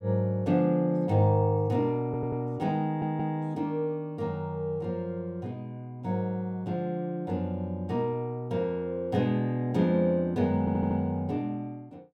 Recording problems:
stutter; at 2 s, at 3 s and at 11 s

